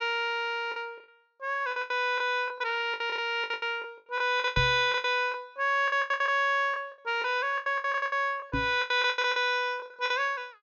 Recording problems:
treble cut off; nothing above 6.9 kHz
packet loss; 17% of the sound replaced, filled with the last packet
microphone thump; at 4.5 s and at 8.5 s; peak 0 dB vs average level

